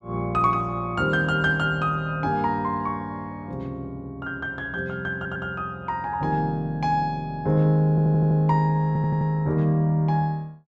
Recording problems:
audio stuttering; at 5 s, at 8 s and at 9 s

